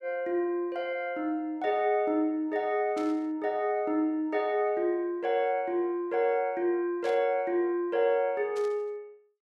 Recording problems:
burst of static; at 3 s, at 7 s and at 8.5 s; peak -13 dB vs average level

